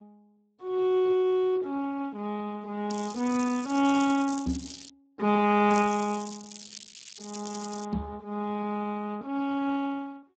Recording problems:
lossy compression; Speex, log-spectral distance 8 dB
crackling; from 3 to 5 s and from 5.5 to 8 s; loose cable, SNR 15 dB
microphone bump; at 4.5 s and at 8 s; peak +3 dB vs average level

